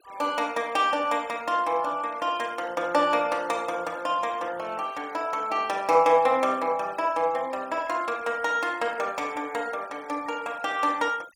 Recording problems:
noise reduction artefacts; signal-to-artefact ratio 23 dB

